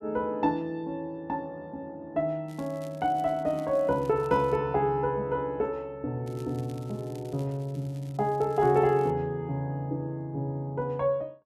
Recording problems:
crackling; from 2.5 to 4.5 s and from 6.5 to 9 s; loose cable, SNR 27 dB

